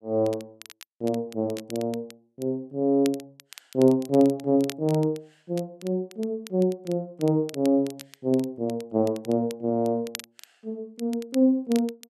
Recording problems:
crackle; vinyl, SNR 20 dB

